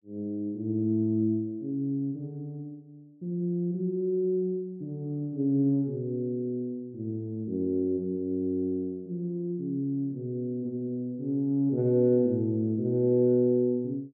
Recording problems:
none

